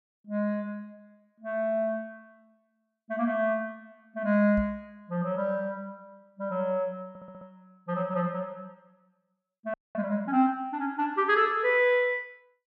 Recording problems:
microphone thump; at 4.5 s; peak -5 dB vs average level
audio stuttering; at 7 s
frozen audio; at 9.5 s

